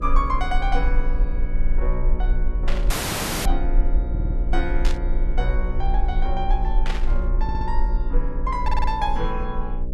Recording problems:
hum; 60 Hz, harmonics up to 600 Hz, SNR 5 dB
rumble; below 40 Hz, strongest tone 20 Hz, SNR -4 dB
stutter; 4 times, first at 1.5 s
burst of static; at 2.5 s, at 5 s and at 7 s; peak +2 dB vs average level
audio cutting out; at 3 s for 0.5 s

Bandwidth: 13.5 kHz